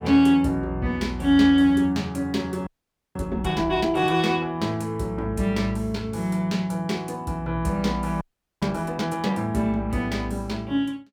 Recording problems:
frozen audio; at 2.5 s and at 8 s

